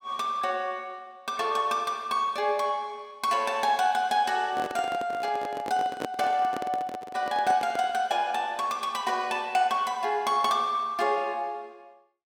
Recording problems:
handling noise; from 4.5 to 8 s; peak -1 dB vs average level

